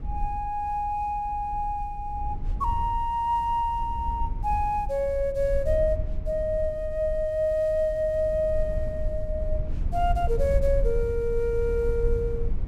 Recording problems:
rumble; below 66 Hz, SNR 6 dB

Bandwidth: 16 kHz